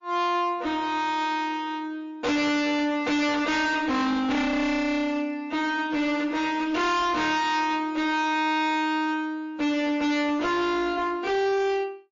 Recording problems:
codec artefacts; MP3, log-spectral distance 2 dB, nothing above 6.5 kHz
distorted audio; hard clipping, uneven, signal-to-distortion ratio 6 dB

